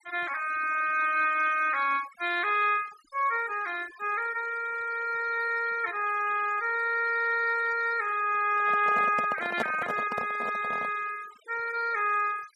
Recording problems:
denoising artefacts; signal-to-artefact ratio 19 dB
microphone handling noise; from 8.5 to 11 s; peak +1 dB vs average level

